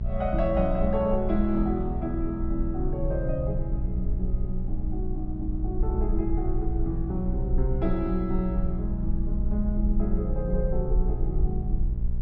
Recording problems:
hum; 60 Hz, harmonics up to 600 Hz, SNR 5 dB
low-frequency rumble; below 50 Hz, SNR 2 dB

